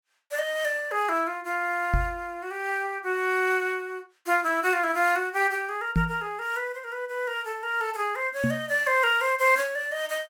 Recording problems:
microphone thump; at 2 s, at 6 s and at 8.5 s; peak +5 dB vs average level

